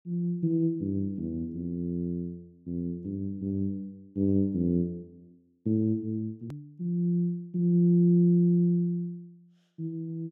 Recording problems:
click at an edit; at 6.5 s

